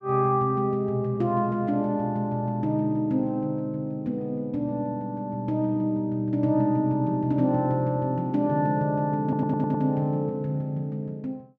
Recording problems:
stutter; at 9 s

